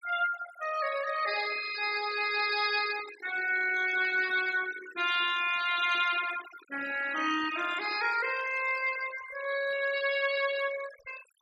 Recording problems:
noise reduction artefacts; signal-to-artefact ratio 12 dB

